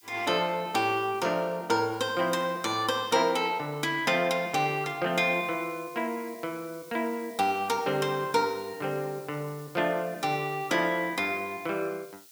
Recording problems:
background hiss; slope +6 dB per octave, SNR 22 dB

